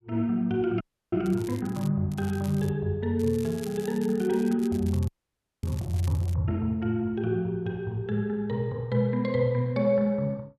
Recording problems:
frozen audio; at 1 s and at 5 s for 0.5 s
crackling; at 1.5 s, at 2 s and from 3 to 6.5 s; loose cable, SNR 21 dB

